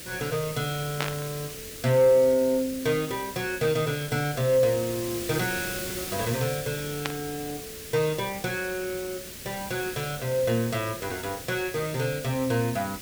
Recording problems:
hiss; SNR 9 dB
static burst; at 1 s and at 7 s; peak +2 dB vs average level

